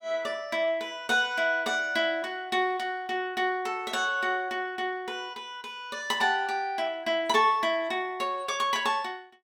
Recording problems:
none

